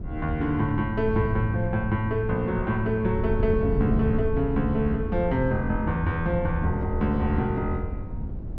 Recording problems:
wind on the microphone; below 130 Hz, SNR 6 dB

